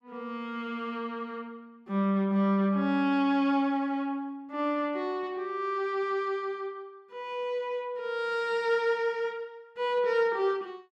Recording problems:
none

